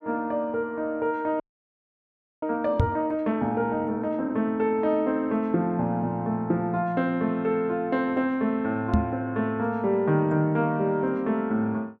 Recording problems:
frozen audio; at 1.5 s for 1 s
knock on the microphone; at 3 s and at 9 s; peak +7 dB vs average level

